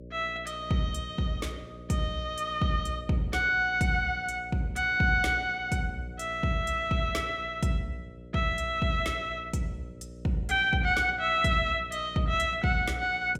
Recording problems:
hum; 60 Hz, harmonics up to 600 Hz, SNR 18 dB

